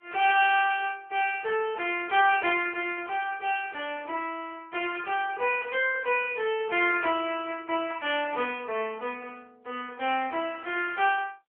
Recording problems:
telephone audio; 300 Hz to 3.4 kHz, AMR-NB

